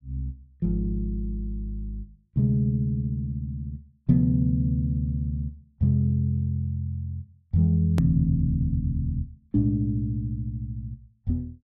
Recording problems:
hard cut with a click; at 8 s

